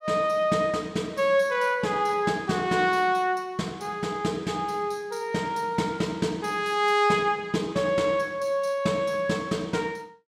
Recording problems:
none

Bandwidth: 16 kHz